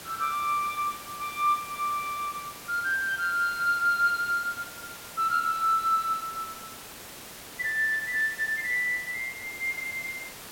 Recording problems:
hiss; slope -2 dB per octave, SNR 14 dB

